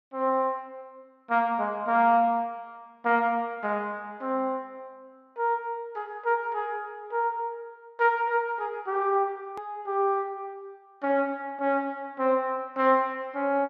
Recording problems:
click at an edit; at 9.5 s

